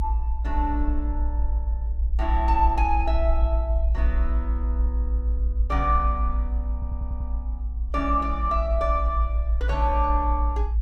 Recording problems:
low-frequency rumble; below 58 Hz, strongest tone 58 Hz, SNR -2 dB
stutter; at 6.5 s

